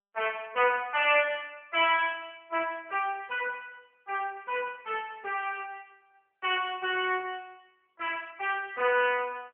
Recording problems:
telephone audio; 320 Hz to 3.2 kHz, AMR-NB

